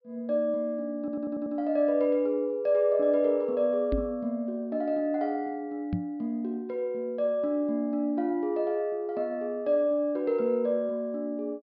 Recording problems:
treble cut off; nothing above 5.5 kHz
stutter; at 1 s
knock on the microphone; at 4 s and at 6 s; peak +2 dB vs average level

